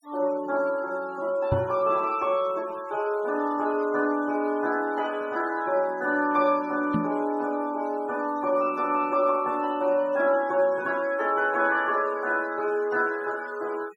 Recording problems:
denoising artefacts; signal-to-artefact ratio 24 dB
knock on the microphone; at 1.5 s and at 7 s; peak +3 dB vs average level

